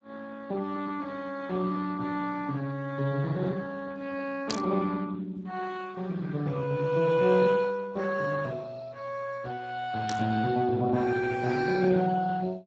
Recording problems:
lossy codec; Speex, log-spectral distance 4 dB
static burst; at 4.5 s and at 10 s; peak +1 dB vs average level

